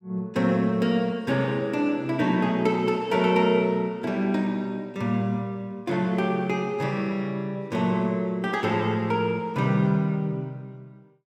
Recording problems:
none

